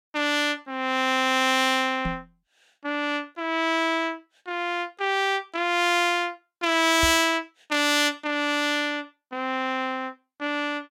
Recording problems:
knock on the microphone; at 2 s and at 7 s; peak -2 dB vs average level

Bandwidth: 16.5 kHz